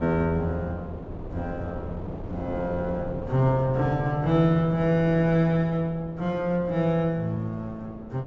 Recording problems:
treble missing; nothing above 8 kHz
wind on the microphone; below 460 Hz, SNR 13 dB

